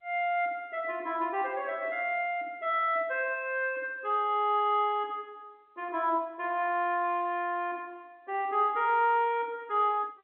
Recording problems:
phone line; 220 Hz to 3.5 kHz, G.711

